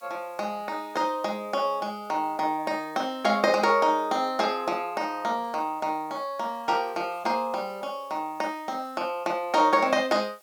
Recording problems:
hiss; slope +4 dB per octave, SNR 29 dB

